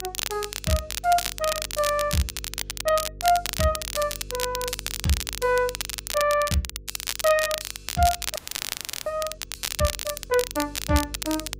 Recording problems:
hum; 50 Hz, harmonics up to 500 Hz, SNR 18 dB
crackling; vinyl, SNR 4 dB
audio freezing; at 8.5 s for 0.5 s

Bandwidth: 15.5 kHz